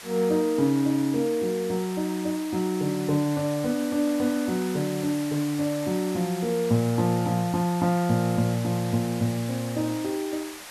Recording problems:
hiss; SNR 13 dB

